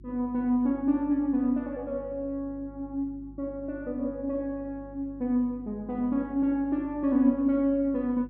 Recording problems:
electrical hum; 50 Hz, harmonics up to 350 Hz, SNR 21 dB

